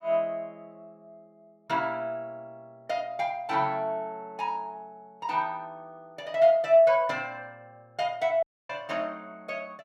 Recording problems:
audio cutting out; at 8.5 s

